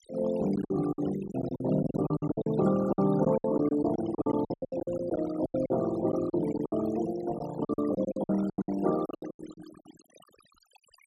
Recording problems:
noise reduction artefacts; signal-to-artefact ratio 15 dB
lost packets; 18% of the sound replaced, filled with silence

